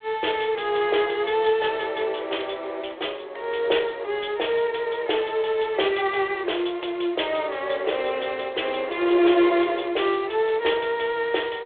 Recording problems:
phone line; 300 Hz to 3.6 kHz, G.726

